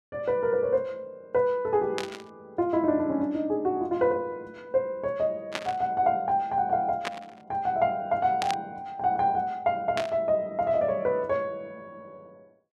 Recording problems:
static burst; 5 times, first at 2 s; peak 0 dB vs average level

